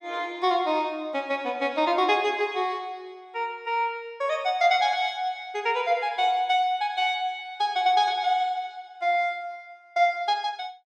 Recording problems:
none

